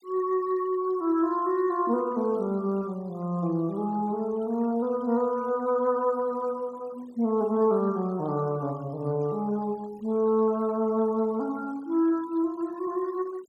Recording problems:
noise reduction artefacts; signal-to-artefact ratio 26 dB

